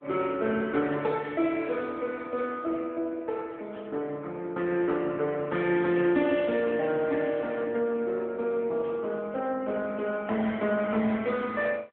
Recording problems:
phone line; 170 Hz to 3.6 kHz, AMR-NB

